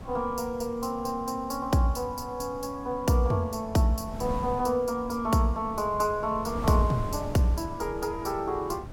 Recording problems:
wind on the microphone; below 250 Hz, SNR 13 dB

